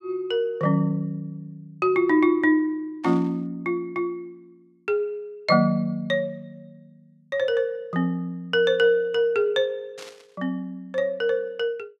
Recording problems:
static burst; at 3 s and at 10 s; peak -13 dB vs average level

